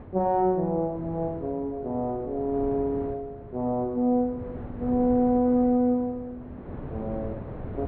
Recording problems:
treble missing; nothing above 4.3 kHz
wind on the microphone; below 430 Hz, SNR 14 dB

